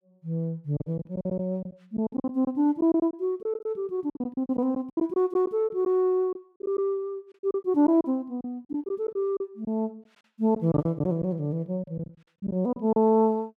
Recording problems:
packet loss; 11% of the sound replaced, filled with silence

